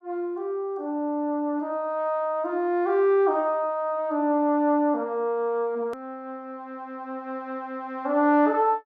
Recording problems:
hard cut with a click; at 6 s

